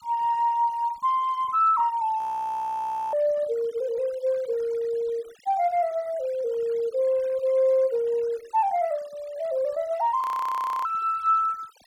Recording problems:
denoising artefacts; signal-to-artefact ratio 26 dB
frozen audio; at 2 s for 1 s and at 10 s for 0.5 s

